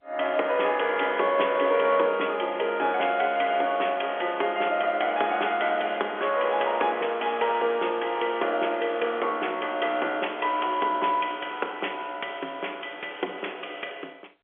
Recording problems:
telephone audio; 300 Hz to 3.4 kHz, G.711

